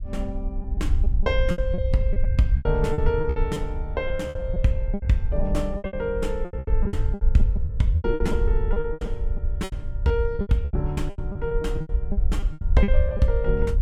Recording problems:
low-frequency rumble; below 64 Hz, SNR 0 dB
lost packets; 17% of the sound replaced, filled with repeated pitch periods

